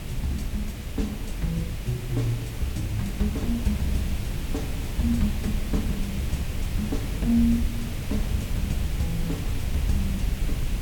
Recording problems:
hiss; SNR 8 dB
low-frequency rumble; below 96 Hz, SNR 3 dB

